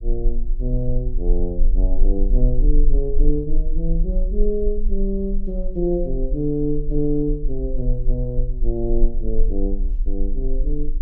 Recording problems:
rumble; below 34 Hz, strongest tone 20 Hz, SNR -1 dB

